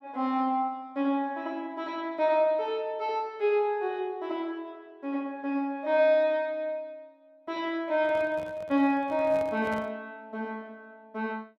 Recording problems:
microphone handling noise; from 8 to 10 s; peak -9 dB vs average level

